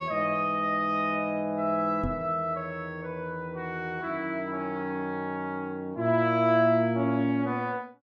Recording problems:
microphone bump; at 2 s; peak 0 dB vs average level

